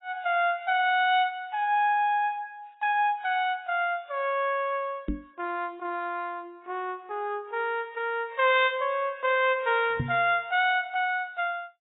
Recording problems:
codec artefacts; AAC, log-spectral distance 2 dB, nothing above 3.3 kHz
microphone thump; at 5 s and at 10 s; peak +1 dB vs average level

